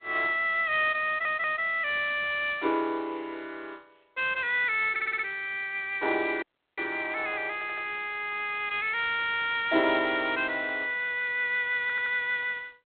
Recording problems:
telephone audio; 260 Hz to 3.7 kHz, G.726
stutter; 4 times, first at 1 s
dropout; at 6.5 s

